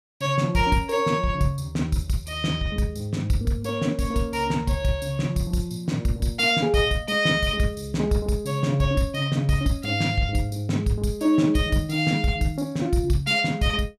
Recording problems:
none

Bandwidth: 15 kHz